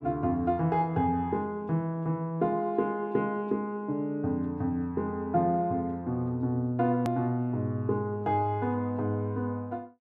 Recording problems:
hard cut with a click; at 7 s

